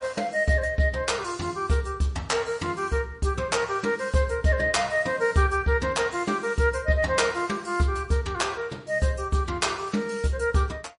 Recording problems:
codec artefacts; MP3, log-spectral distance 3 dB, nothing above 10.4 kHz

